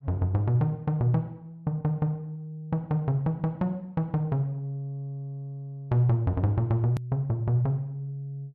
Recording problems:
hard cut with a click; at 7 s

